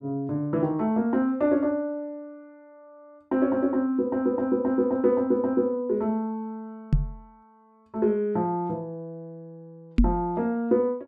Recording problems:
microphone thump; at 7 s and at 10 s; peak +8 dB vs average level

